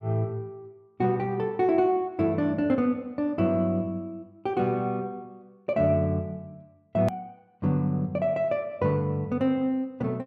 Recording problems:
click at an edit; at 7 s

